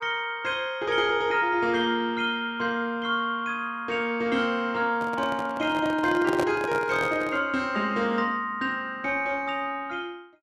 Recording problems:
microphone handling noise; from 5 to 7.5 s; peak +2 dB vs average level

